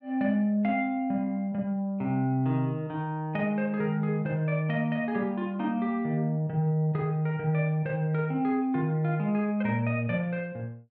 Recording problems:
none

